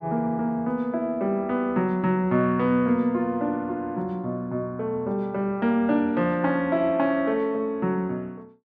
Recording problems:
none

